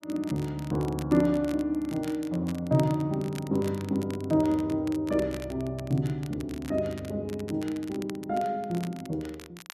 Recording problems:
crackling; vinyl, SNR 19 dB

